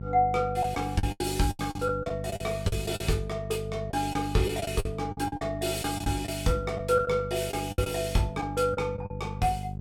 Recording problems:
mains hum; 50 Hz, harmonics up to 450 Hz, SNR 8 dB
packet loss; 11% of the sound replaced, filled with the last packet

